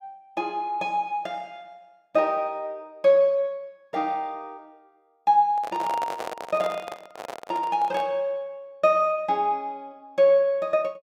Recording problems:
handling noise; from 5.5 to 8 s; peak -4 dB vs average level

